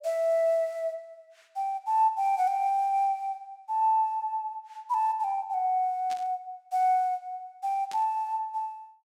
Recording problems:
burst of static; at 6 s and at 8 s; peak -11 dB vs average level

